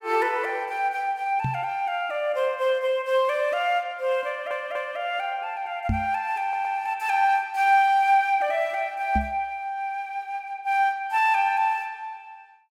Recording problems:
knock on the microphone; at 1.5 s, at 6 s and at 9 s; peak +2 dB vs average level
audio stuttering; at 4.5 s and at 6.5 s

